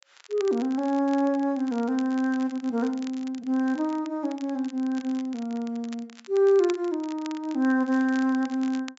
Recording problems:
treble cut off; nothing above 8 kHz
crackle; vinyl, SNR 22 dB

